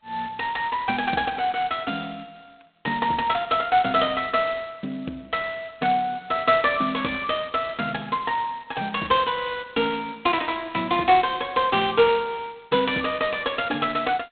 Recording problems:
phone line; 220 Hz to 3.9 kHz, G.726

